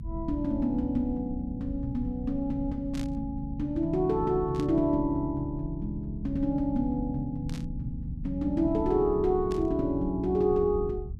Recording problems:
rumble; below 110 Hz, SNR 10 dB
static burst; 4 times, first at 3 s; peak -10 dB vs average level

